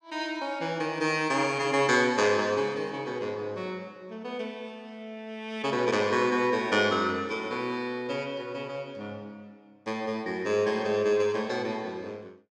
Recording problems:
none

